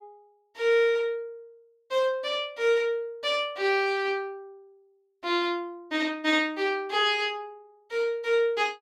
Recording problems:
none

